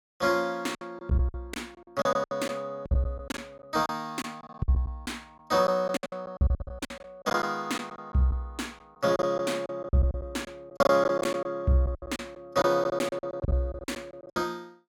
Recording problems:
lost packets; 15% of the sound replaced, filled with silence

